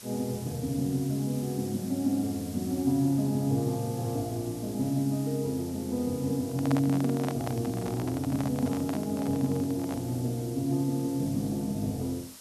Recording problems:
background hiss; SNR 16 dB
handling noise; from 6.5 to 10 s; peak -1 dB vs average level

